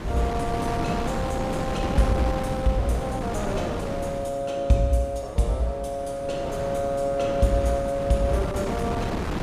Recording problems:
wind on the microphone; below 630 Hz, SNR 4 dB

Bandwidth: 15 kHz